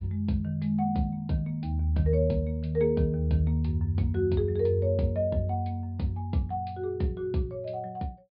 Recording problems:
low-pass filter; nothing above 4.8 kHz

